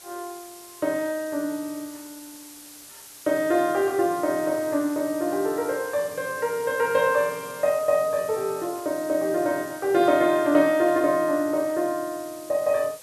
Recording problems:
hiss; slope +1 dB per octave, SNR 18 dB

